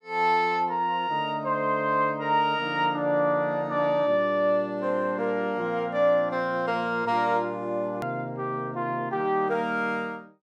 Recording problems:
hard cut with a click; at 8 s

